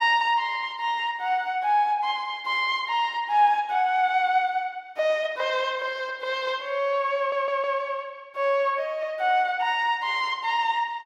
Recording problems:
stutter; at 7 s

